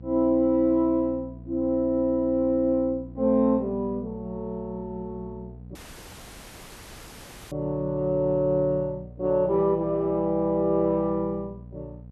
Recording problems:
electrical hum; 60 Hz, harmonics up to 540 Hz, SNR 18 dB
dropout; at 6 s for 2 s

